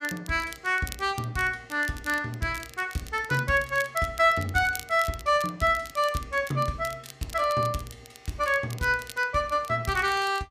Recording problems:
crackling; vinyl, SNR 18 dB

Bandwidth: 14.5 kHz